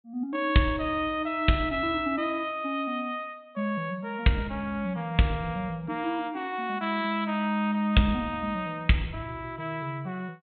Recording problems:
treble cut off; nothing above 4 kHz

